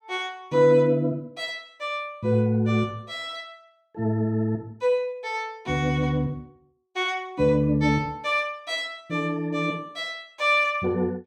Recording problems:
none

